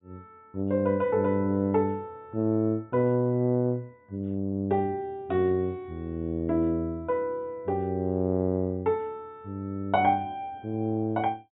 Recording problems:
treble cut off; nothing above 4 kHz

